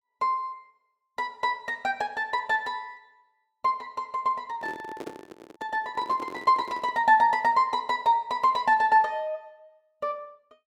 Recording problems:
microphone handling noise; from 4.5 to 7 s; peak -7 dB vs average level

